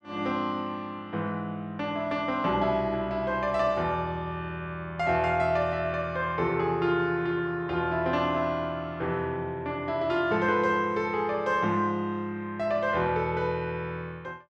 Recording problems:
none

